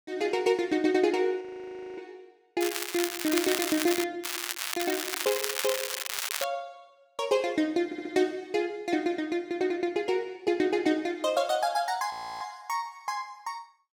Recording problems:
audio freezing; at 1.5 s for 0.5 s and at 12 s
crackle; from 2.5 to 4 s and from 4 to 6.5 s; loose cable, SNR 2 dB
audio stuttering; at 8 s

